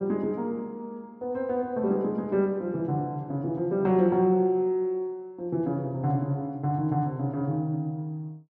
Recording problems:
none

